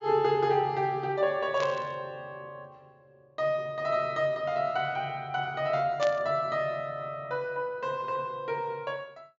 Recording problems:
treble cut off; nothing above 7.3 kHz
burst of static; at 1.5 s and at 6 s; peak -3 dB vs average level

